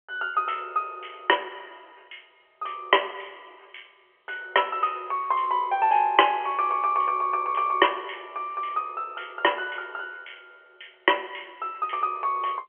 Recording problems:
telephone audio; 320 Hz to 3.2 kHz, G.711

